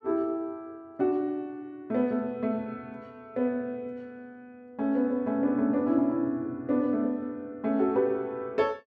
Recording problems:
none

